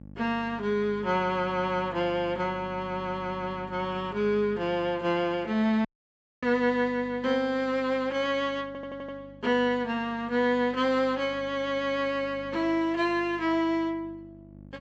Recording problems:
treble cut off; nothing above 8 kHz
mains hum; 50 Hz, harmonics up to 850 Hz, SNR 20 dB
audio cutting out; at 6 s for 0.5 s
stutter; at 8.5 s

